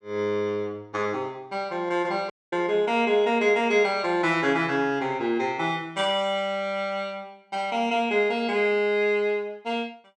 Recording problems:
dropout; at 2.5 s

